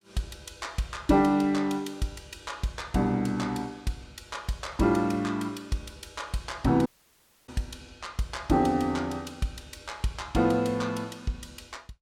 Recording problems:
audio cutting out; at 7 s for 0.5 s

